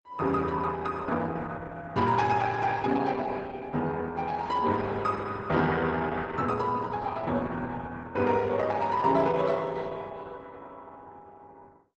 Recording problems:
codec artefacts; Opus, log-spectral distance 3 dB, nothing above 8 kHz

